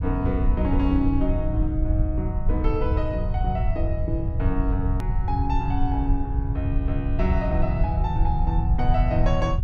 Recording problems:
rumble; below 90 Hz, SNR -2 dB
hard cut with a click; at 5 s

